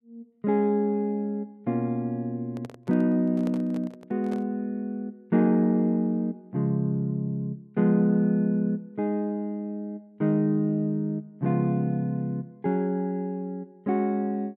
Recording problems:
microphone handling noise; from 2.5 to 4.5 s; peak -9 dB vs average level

